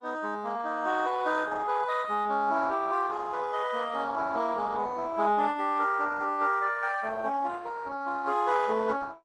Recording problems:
lossy codec; Opus, log-spectral distance 4 dB

